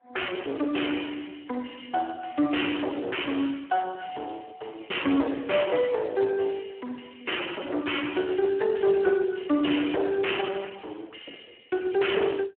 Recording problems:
phone line; 240 Hz to 3.1 kHz, Speex
distorted audio; hard clipping, uneven, signal-to-distortion ratio 8 dB

